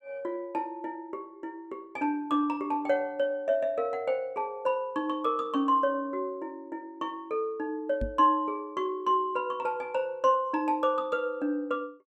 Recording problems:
knock on the microphone; at 8 s; peak -1 dB vs average level

